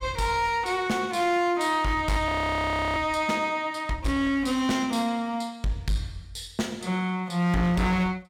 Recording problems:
distortion; hard clipping, uneven, signal-to-distortion ratio 11 dB
audio freezing; at 2.5 s for 0.5 s

